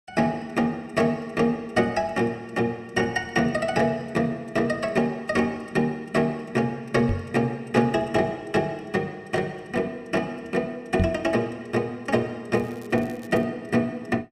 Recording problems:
microphone thump; at 7 s and at 11 s; peak +4 dB vs average level
crackling; at 13 s; loose cable, SNR 27 dB

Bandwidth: 15 kHz